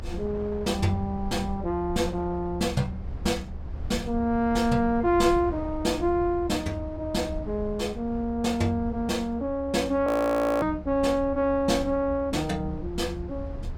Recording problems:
low-frequency rumble; below 82 Hz, SNR 12 dB
wind noise; below 830 Hz, SNR 23 dB
frozen audio; at 10 s for 0.5 s

